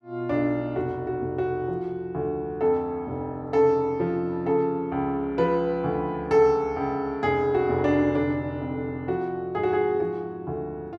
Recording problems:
none

